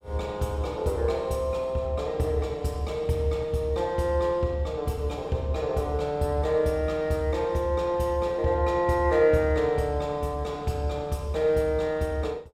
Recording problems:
none

